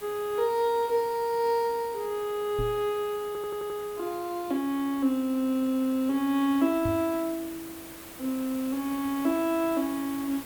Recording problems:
hiss; slope -3 dB per octave, SNR 16 dB
knock on the microphone; at 2.5 s and at 7 s; peak -2 dB vs average level
stutter; at 3.5 s

